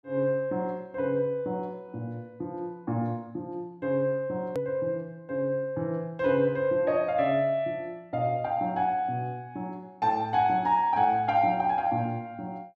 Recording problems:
click at an edit; at 4.5 s

